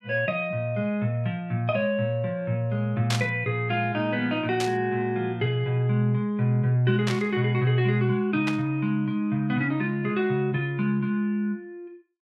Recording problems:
static burst; 4 times, first at 3 s; peak +1 dB vs average level

